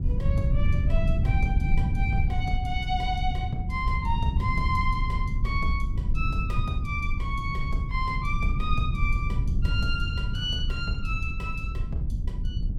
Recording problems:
rumble; below 100 Hz, SNR -4 dB

